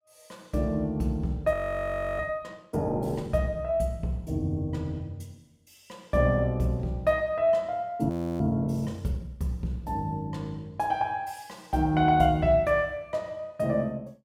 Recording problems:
audio freezing; at 1.5 s for 0.5 s and at 8 s

